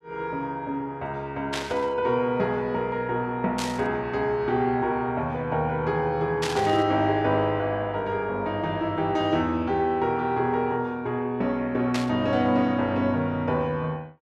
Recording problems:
static burst; 4 times, first at 1.5 s; peak -1 dB vs average level

